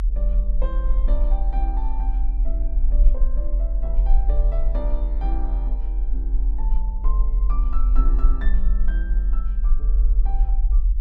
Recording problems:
low-frequency rumble; below 44 Hz, SNR -15 dB

